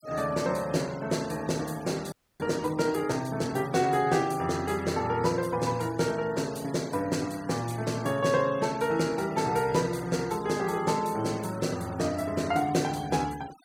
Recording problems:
denoising artefacts; signal-to-artefact ratio 20 dB
audio freezing; at 2 s

